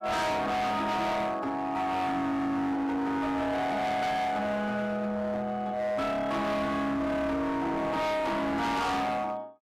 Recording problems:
distortion; hard clipping, signal-to-distortion ratio 6 dB

